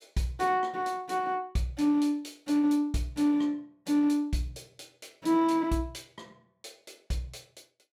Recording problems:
none

